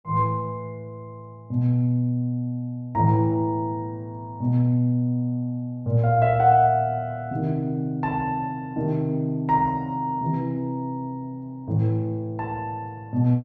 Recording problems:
none

